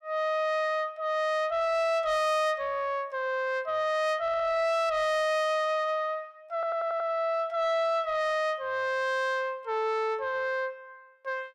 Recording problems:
distortion; soft clipping, signal-to-distortion ratio 10 dB
audio stuttering; at 4 s and at 6.5 s

